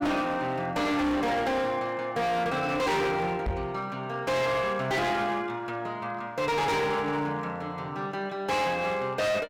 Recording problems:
distorted audio; hard clipping, uneven, signal-to-distortion ratio 7 dB
microphone thump; at 3.5 s; peak +1 dB vs average level

